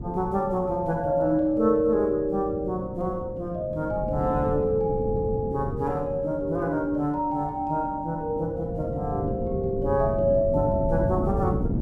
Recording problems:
wind noise; below 250 Hz, SNR 7 dB

